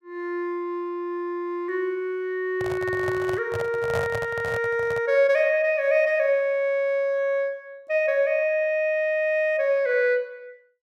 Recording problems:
handling noise; from 2.5 to 5 s; peak -3 dB vs average level

